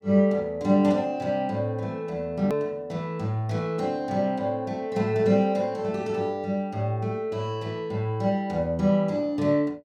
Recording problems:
edit click; at 2.5 s

